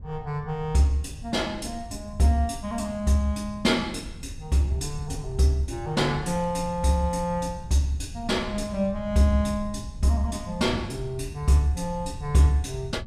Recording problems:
wind noise; below 110 Hz, SNR 13 dB

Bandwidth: 14.5 kHz